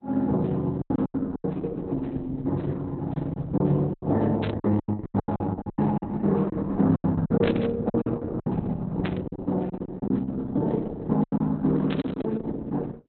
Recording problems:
lossy compression; Opus, log-spectral distance 3 dB, nothing above 4.1 kHz
packet loss; 12% of the sound replaced, filled with silence
burst of static; 4 times, first at 4.5 s; peak -2 dB vs average level

